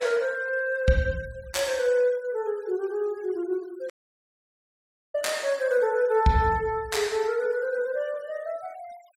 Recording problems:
noise reduction artefacts; signal-to-artefact ratio 24 dB
dropout; at 4 s for 1 s

